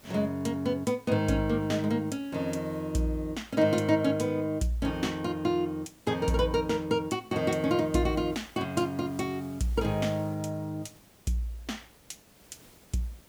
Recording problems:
background hiss; slope -4 dB per octave, SNR 26 dB

